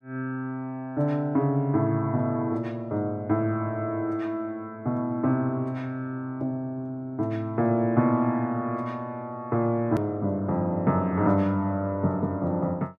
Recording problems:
hard cut with a click; at 10 s

